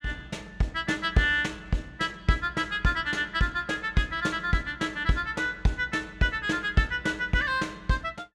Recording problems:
none

